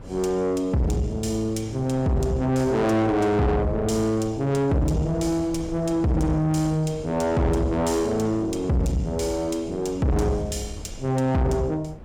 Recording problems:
distorted audio; soft clipping, signal-to-distortion ratio 7 dB
wind noise; below 370 Hz, SNR 17 dB

